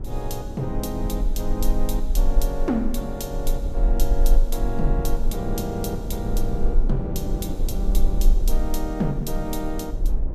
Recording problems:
low-frequency rumble; below 36 Hz, strongest tone 22 Hz, SNR -1 dB
wind noise; below 290 Hz, SNR 6 dB

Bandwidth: 14.5 kHz